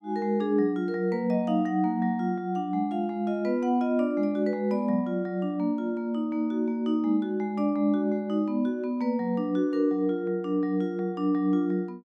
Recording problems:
none

